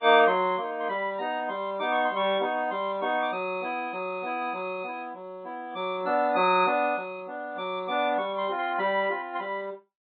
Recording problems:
treble missing; nothing above 3.8 kHz
lossy compression; MP3, log-spectral distance 2 dB

